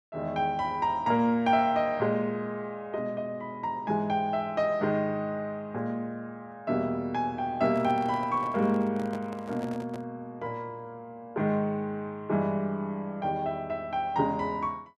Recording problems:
handling noise; from 7.5 to 10 s; peak -8 dB vs average level

